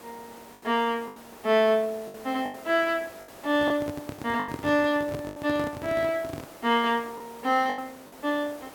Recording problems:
hiss; slope -5 dB per octave, SNR 20 dB
lost packets; 7% of the sound replaced, filled with the last packet
microphone handling noise; from 3.5 to 6.5 s; peak -4 dB vs average level

